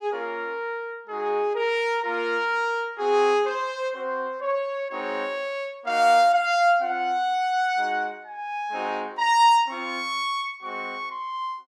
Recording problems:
none

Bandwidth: 15.5 kHz